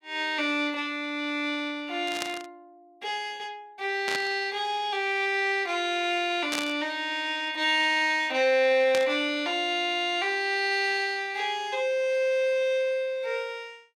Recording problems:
static burst; 4 times, first at 2 s; peak 0 dB vs average level

